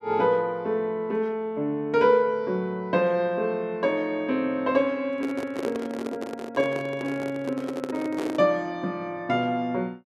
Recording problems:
handling noise; from 5 to 8.5 s; peak -2 dB vs average level

